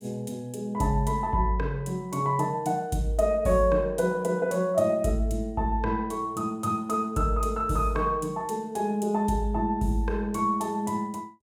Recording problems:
none

